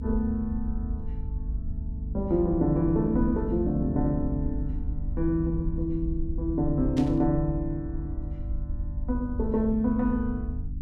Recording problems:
hum; 50 Hz, harmonics up to 300 Hz, SNR 9 dB
rumble; below 72 Hz, SNR 8 dB
static burst; at 7 s; peak -10 dB vs average level

